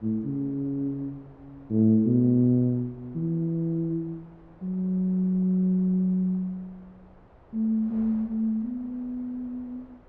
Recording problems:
wind noise; below 720 Hz, SNR 28 dB

